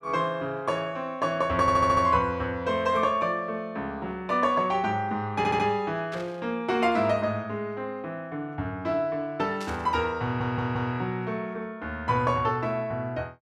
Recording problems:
audio stuttering; at 1.5 s, at 5.5 s and at 10 s
burst of static; at 6 s and at 9.5 s; peak -10 dB vs average level

